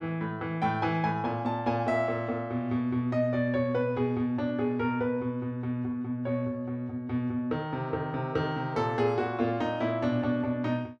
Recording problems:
none

